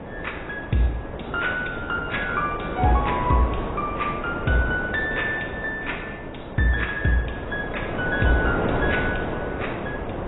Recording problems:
lossy compression; AAC, log-spectral distance 5 dB, nothing above 3.8 kHz
wind on the microphone; below 760 Hz, SNR 5 dB

